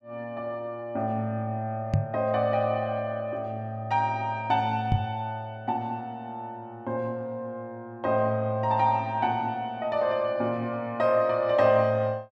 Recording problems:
knock on the microphone; at 2 s and at 5 s; peak +7 dB vs average level

